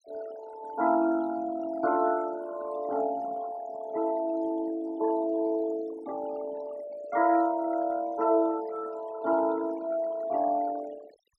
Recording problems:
noise reduction artefacts; signal-to-artefact ratio 17 dB

